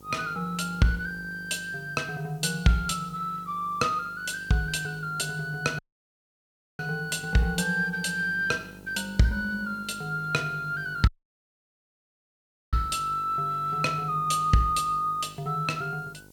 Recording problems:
electrical hum; 50 Hz, harmonics up to 1.1 kHz, SNR 23 dB
background hiss; SNR 29 dB
audio cutting out; at 6 s for 1 s and at 11 s for 1.5 s

